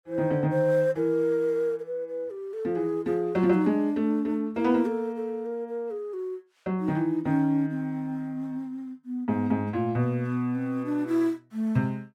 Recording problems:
none

